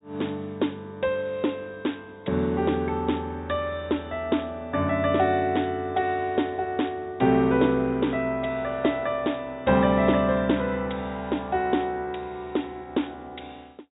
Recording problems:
treble missing; nothing above 4 kHz

